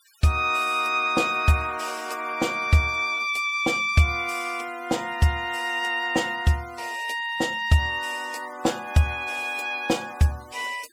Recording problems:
denoising artefacts; signal-to-artefact ratio 21 dB

